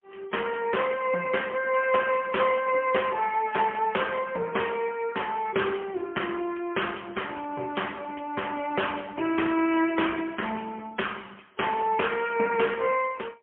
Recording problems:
telephone audio; 260 Hz to 3.2 kHz, AMR-NB, then MP3

